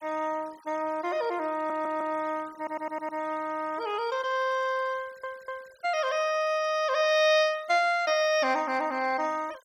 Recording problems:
noise reduction artefacts; signal-to-artefact ratio 24 dB
stutter; at 1.5 s, at 2.5 s and at 5 s

